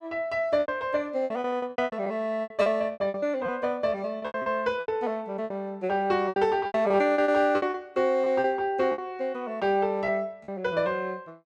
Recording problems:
lost packets; 14% of the sound replaced, filled with repeated pitch periods

